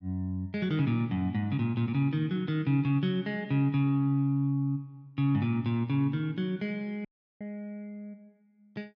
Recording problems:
dropout; at 7 s

